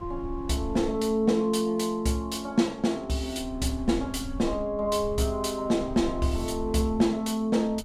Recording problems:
wind on the microphone; below 86 Hz, SNR 14 dB

